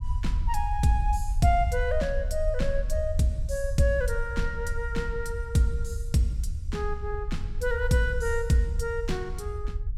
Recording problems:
rumble; below 66 Hz, SNR 5 dB

